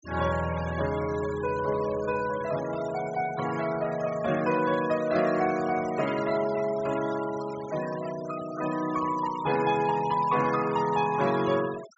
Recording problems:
treble cut off; nothing above 8 kHz
noise reduction artefacts; signal-to-artefact ratio 15 dB

